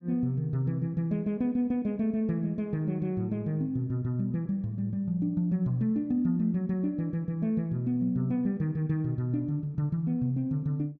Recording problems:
none

